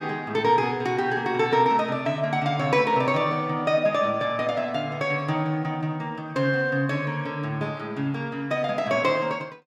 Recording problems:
none

